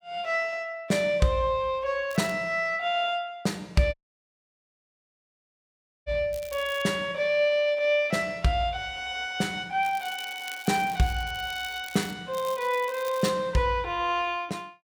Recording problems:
crackle; 4 times, first at 2 s; loose cable, SNR 18 dB
dropout; at 4 s for 2 s

